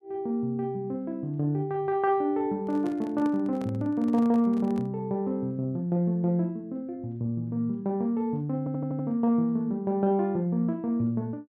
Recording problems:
microphone handling noise; from 2.5 to 5 s; peak -10 dB vs average level
audio stuttering; at 8.5 s

